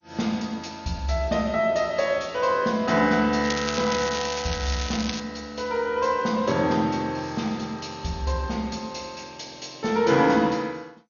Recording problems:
lossy codec; MP2, log-spectral distance 7 dB, nothing above 6.7 kHz
crackling; from 3.5 to 5 s; loose cable, SNR 7 dB

